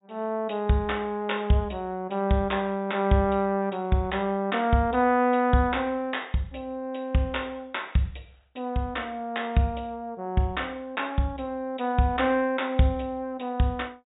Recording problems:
low-pass filter; nothing above 4 kHz

